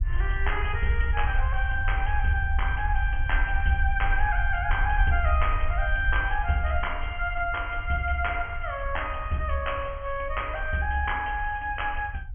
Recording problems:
low-pass filter; nothing above 3.3 kHz
low-frequency rumble; below 62 Hz, SNR 3 dB

